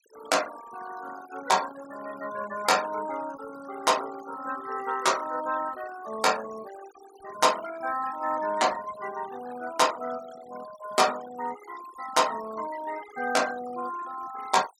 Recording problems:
noise reduction artefacts; signal-to-artefact ratio 15 dB

